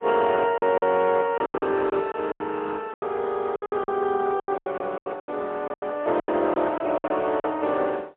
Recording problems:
phone line; 320 Hz to 3.5 kHz, AMR-NB, then MP3
lost packets; 16% of the sound replaced, filled with silence

